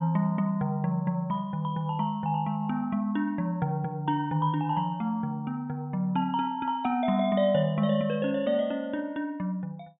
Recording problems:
low-pass filter; nothing above 4 kHz

